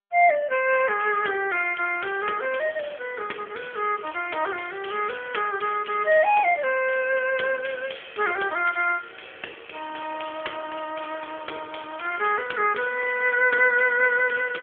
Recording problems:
telephone audio; 320 Hz to 3 kHz, AMR-NB

